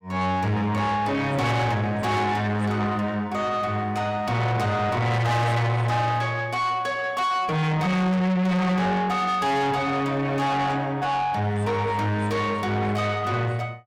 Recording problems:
distortion; soft clipping, signal-to-distortion ratio 7 dB

